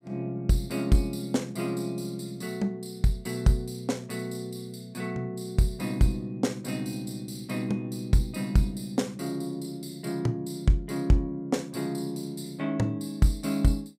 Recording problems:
none

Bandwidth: 15.5 kHz